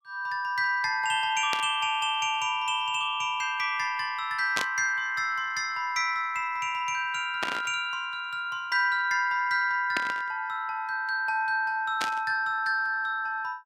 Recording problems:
static burst; 5 times, first at 1.5 s; peak +2 dB vs average level

